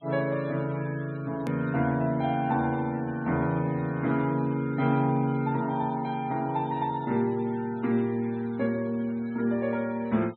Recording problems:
treble missing; nothing above 4 kHz
noise reduction artefacts; signal-to-artefact ratio 24 dB
edit click; at 1.5 s

